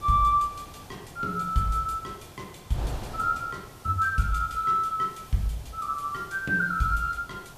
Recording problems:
hiss; slope 0 dB per octave, SNR 25 dB
wind noise; below 810 Hz, SNR 18 dB

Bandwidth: 14.5 kHz